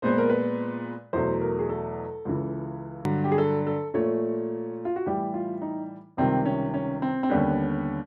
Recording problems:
click at an edit; at 3 s

